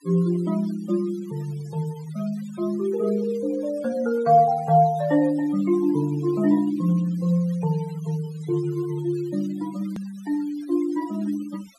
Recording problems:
noise reduction artefacts; signal-to-artefact ratio 23 dB
click at an edit; at 10 s

